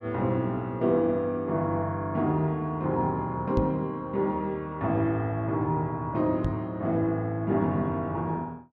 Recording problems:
microphone bump; at 3.5 s and at 6.5 s; peak +3 dB vs average level

